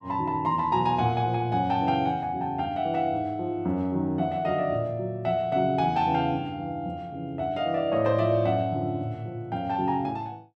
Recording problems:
none

